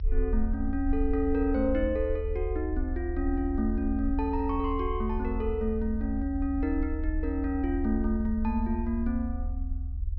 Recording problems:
treble cut off; nothing above 5.6 kHz
low-frequency rumble; below 74 Hz, SNR 4 dB

